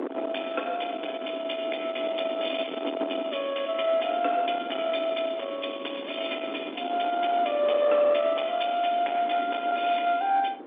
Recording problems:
telephone audio; 240 Hz to 3.6 kHz, G.711
distortion; soft clipping, signal-to-distortion ratio 15 dB
wind noise; below 720 Hz, SNR 11 dB

